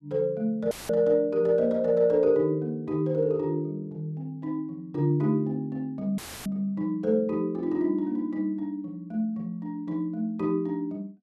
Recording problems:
audio cutting out; at 0.5 s and at 6 s; filled with static

